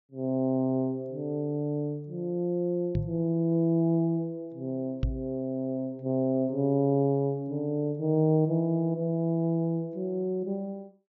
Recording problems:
treble missing; nothing above 7 kHz
knock on the microphone; at 3 s and at 5 s; peak +3 dB vs average level

